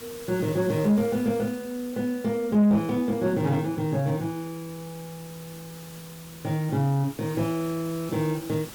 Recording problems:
distorted audio; soft clipping, signal-to-distortion ratio 11 dB
hiss; slope -2 dB per octave, SNR 18 dB

